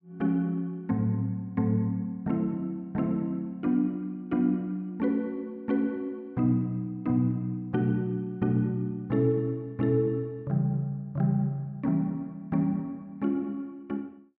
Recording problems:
none

